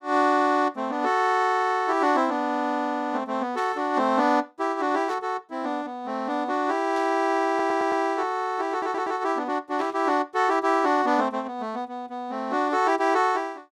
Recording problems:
static burst; 4 times, first at 3.5 s; peak -14 dB vs average level
stutter; at 7.5 s and at 8.5 s

